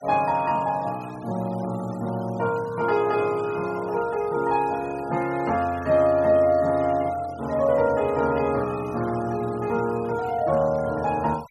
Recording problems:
denoising artefacts; signal-to-artefact ratio 22 dB

